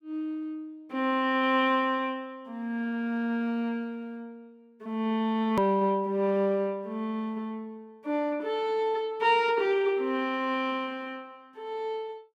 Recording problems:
click at an edit; at 5.5 s

